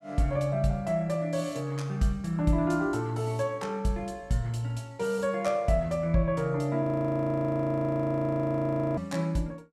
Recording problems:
frozen audio; at 7 s for 2 s

